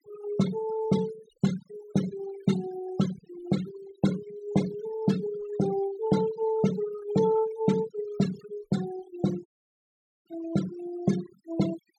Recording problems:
denoising artefacts; signal-to-artefact ratio 13 dB
dropout; at 9.5 s for 1 s

